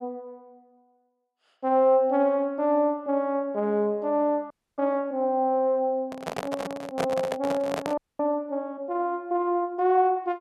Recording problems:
audio freezing; at 4.5 s and at 8 s
handling noise; from 6 to 8 s; peak +1 dB vs average level

